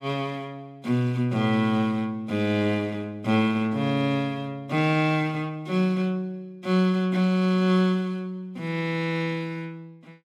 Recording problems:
none

